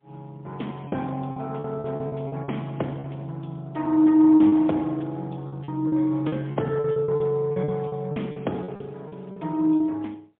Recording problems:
telephone audio; 170 Hz to 3.4 kHz, AMR-NB, then MP3
lost packets; 12% of the sound replaced, filled with repeated pitch periods

